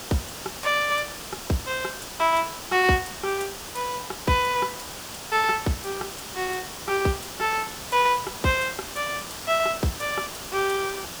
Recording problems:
hiss; SNR 9 dB

